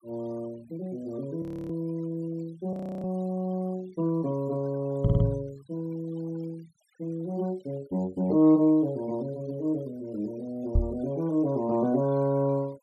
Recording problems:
denoising artefacts; signal-to-artefact ratio 26 dB
audio freezing; at 1.5 s and at 2.5 s
stutter; at 5 s
knock on the microphone; at 5 s and at 11 s; peak +8 dB vs average level

